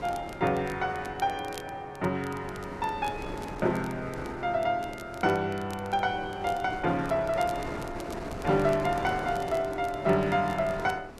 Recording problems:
wind on the microphone; below 860 Hz, SNR 12 dB
crackling; vinyl, SNR 22 dB

